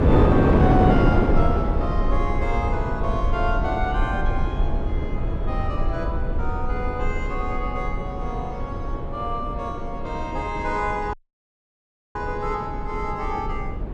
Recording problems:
rumble; below 60 Hz, SNR 1 dB
wind noise; below 470 Hz, SNR -3 dB
dropout; at 11 s for 1 s

